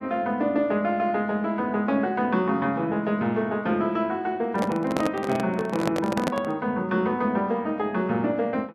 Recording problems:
microphone handling noise; from 4.5 to 6.5 s; peak +3 dB vs average level

